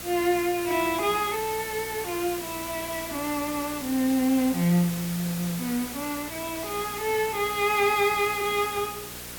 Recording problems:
hum; 60 Hz, harmonics up to 1 kHz, SNR 22 dB
background hiss; slope -1 dB per octave, SNR 9 dB

